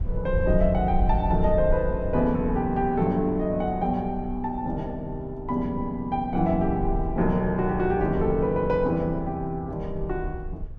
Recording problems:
rumble; below 66 Hz, SNR 9 dB

